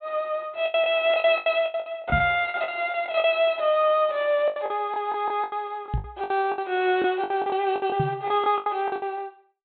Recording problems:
treble missing; nothing above 4 kHz
packet loss; 16% of the sound replaced, filled with the last packet
microphone thump; at 2 s, at 6 s and at 8 s; peak +1 dB vs average level

